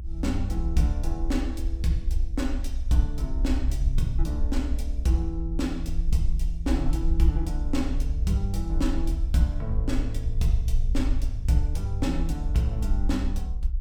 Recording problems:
low-frequency rumble; below 60 Hz, SNR 0 dB

